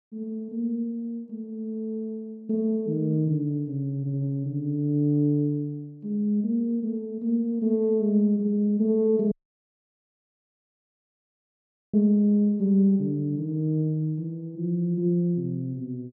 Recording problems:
dropout; at 9.5 s for 2.5 s

